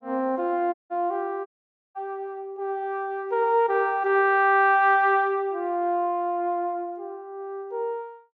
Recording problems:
low-pass filter; nothing above 7.2 kHz
audio cutting out; at 0.5 s and at 1.5 s

